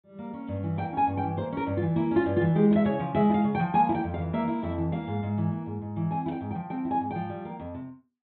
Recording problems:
treble missing; nothing above 4 kHz

